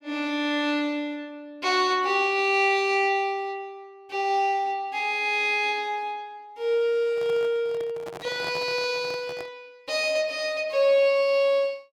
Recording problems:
microphone handling noise; from 7 to 9.5 s; peak -9 dB vs average level

